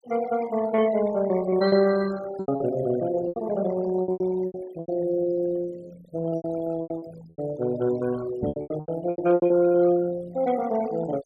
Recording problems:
denoising artefacts; signal-to-artefact ratio 18 dB
lost packets; 12% of the sound replaced, filled with repeated pitch periods
knock on the microphone; at 8.5 s; peak -1 dB vs average level

